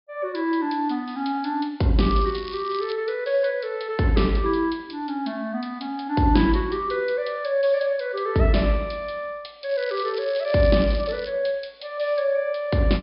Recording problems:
treble cut off; nothing above 5.5 kHz
crackling; at 2 s and from 9.5 to 11 s; loose cable, SNR 17 dB

